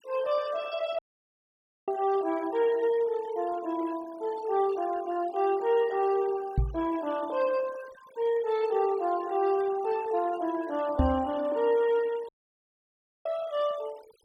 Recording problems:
denoising artefacts; signal-to-artefact ratio 20 dB
dropout; at 1 s for 1 s and at 12 s for 1 s
knock on the microphone; at 6.5 s and at 11 s; peak +7 dB vs average level

